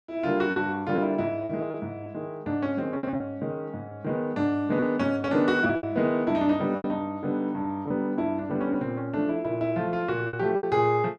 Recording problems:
packet loss; 6% of the sound replaced, filled with repeated pitch periods

